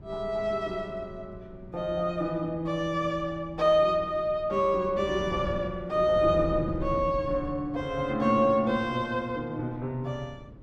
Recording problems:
wind on the microphone; below 220 Hz, SNR 15 dB

